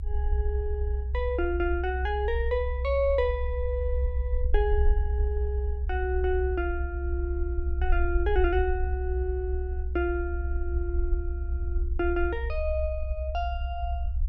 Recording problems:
rumble; below 66 Hz, strongest tone 64 Hz, SNR -1 dB

